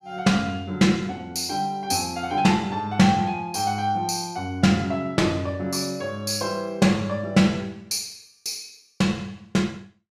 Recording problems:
none

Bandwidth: 15.5 kHz